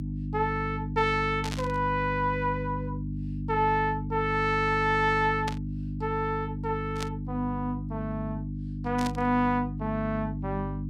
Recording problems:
hum; 50 Hz, harmonics up to 300 Hz, SNR 5 dB
static burst; 4 times, first at 1.5 s; peak -3 dB vs average level

